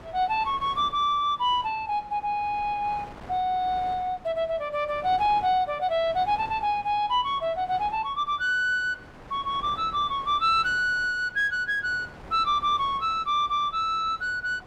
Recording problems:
wind noise; below 1.1 kHz, SNR 20 dB

